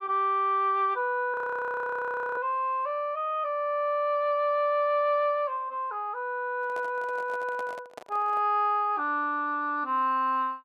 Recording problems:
frozen audio; at 1.5 s for 1 s
microphone handling noise; from 6.5 to 8.5 s; peak -10 dB vs average level

